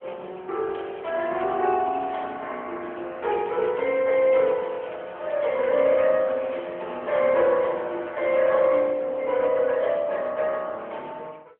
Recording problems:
telephone audio; 260 Hz to 3.3 kHz, AMR-NB
crackle; from 0.5 to 2 s, at 2 s and from 3.5 to 7 s; loose cable, SNR 24 dB

